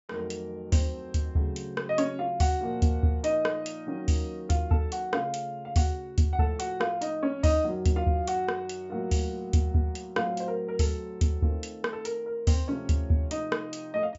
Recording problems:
low-pass filter; nothing above 8 kHz

